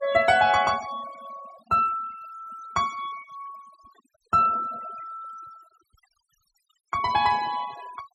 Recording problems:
denoising artefacts; signal-to-artefact ratio 20 dB

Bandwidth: 13.5 kHz